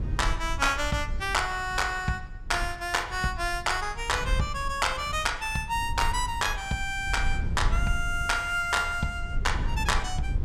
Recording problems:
rumble; below 72 Hz, SNR 7 dB

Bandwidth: 16.5 kHz